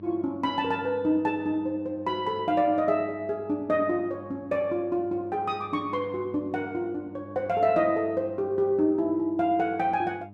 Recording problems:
electrical hum; 50 Hz, harmonics up to 700 Hz, SNR 20 dB

